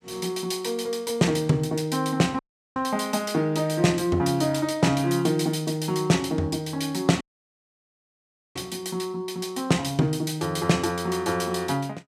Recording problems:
dropout; at 2.5 s and at 7 s for 1.5 s

